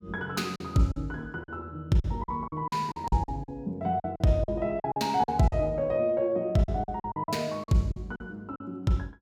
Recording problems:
packet loss; 12% of the sound replaced, filled with silence

